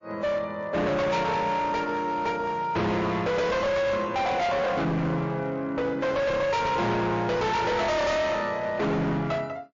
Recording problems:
lossy codec; MP3, log-spectral distance 2 dB, nothing above 6.5 kHz
distorted audio; hard clipping, uneven, signal-to-distortion ratio 6 dB

